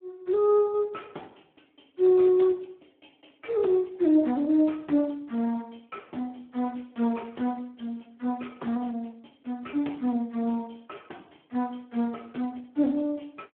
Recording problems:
phone line; 190 Hz to 3.6 kHz, Speex

